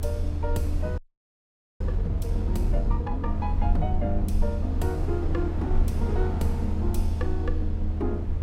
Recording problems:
low-frequency rumble; below 80 Hz, SNR -4 dB
wind noise; below 310 Hz, SNR 5 dB
audio freezing; at 1 s for 1 s

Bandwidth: 16.5 kHz